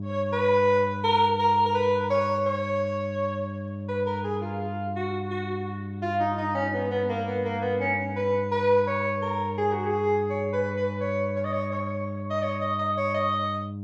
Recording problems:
electrical hum; 50 Hz, harmonics up to 600 Hz, SNR 8 dB

